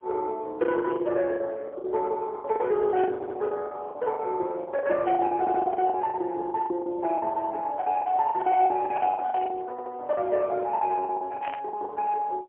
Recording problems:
telephone audio; 320 Hz to 2.2 kHz, AMR-NB, then MP3
lost packets; 14% of the sound replaced, filled with the last packet
static burst; 4 times, first at 3 s; peak -9 dB vs average level
stutter; at 3 s, at 5.5 s and at 9.5 s

